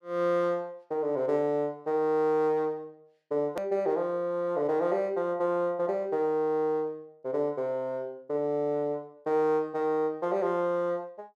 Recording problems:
click at an edit; at 3.5 s

